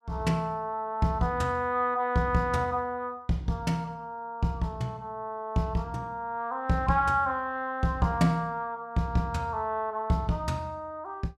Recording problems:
none

